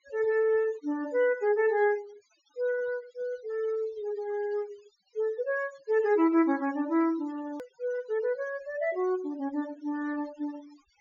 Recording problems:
treble missing; nothing above 7 kHz
noise reduction artefacts; signal-to-artefact ratio 22 dB
hard cut with a click; at 7.5 s

